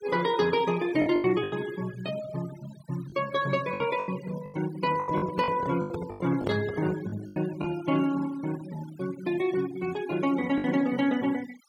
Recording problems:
denoising artefacts; signal-to-artefact ratio 16 dB
packet loss; 8% of the sound replaced, filled with the last packet
handling noise; from 5 to 7 s; peak 0 dB vs average level

